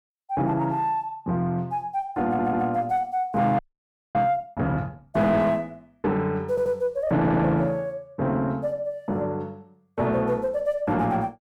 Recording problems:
distorted audio; soft clipping, signal-to-distortion ratio 10 dB
audio stuttering; at 2.5 s, at 6.5 s and at 7 s
frozen audio; at 3.5 s for 0.5 s

